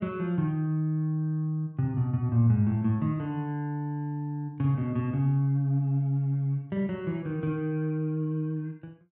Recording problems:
none

